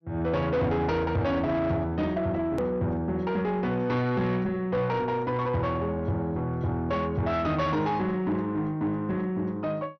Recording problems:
treble missing; nothing above 6.1 kHz
distorted audio; soft clipping, signal-to-distortion ratio 10 dB
click at an edit; at 2.5 s

